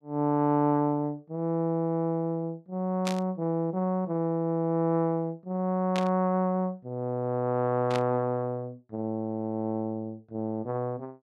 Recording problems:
burst of static; at 3 s, at 6 s and at 8 s; peak -1 dB vs average level

